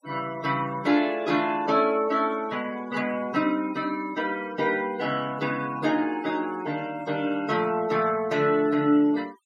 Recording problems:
noise reduction artefacts; signal-to-artefact ratio 19 dB

